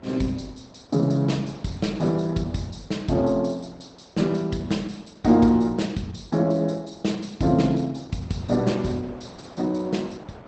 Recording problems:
lossy codec; Opus, log-spectral distance 4 dB, nothing above 12 kHz
wind on the microphone; below 920 Hz, SNR 23 dB

